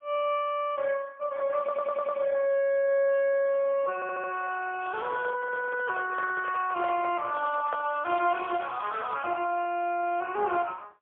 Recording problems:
phone line; 300 Hz to 3.3 kHz, AMR-NB, then MP3
audio stuttering; at 1.5 s and at 4 s
crackle; at 5 s and from 7.5 to 9 s; loose cable, SNR 21 dB
handling noise; from 5 to 8 s; peak -7 dB vs average level

